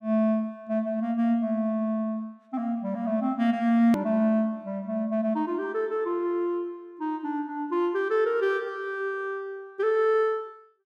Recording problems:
click at an edit; at 4 s

